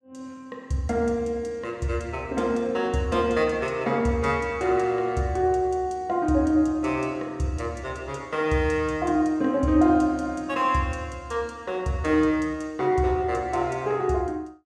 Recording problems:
none

